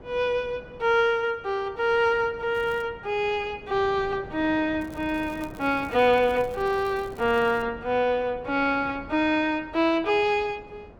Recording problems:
wind noise; below 530 Hz, SNR 20 dB
crackling; at 2.5 s and from 5 to 7.5 s; loose cable, SNR 28 dB

